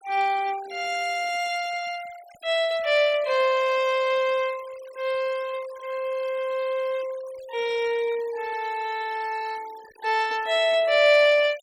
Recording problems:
noise reduction artefacts; signal-to-artefact ratio 20 dB

